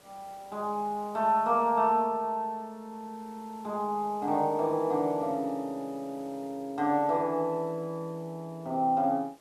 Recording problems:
background hiss; slope -4 dB per octave, SNR 27 dB

